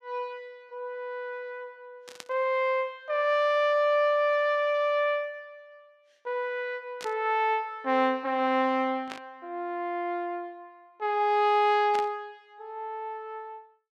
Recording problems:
static burst; 4 times, first at 2 s; peak -7 dB vs average level

